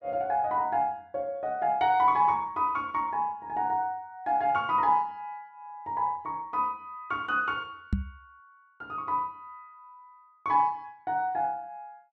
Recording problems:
microphone thump; at 8 s; peak +4 dB vs average level

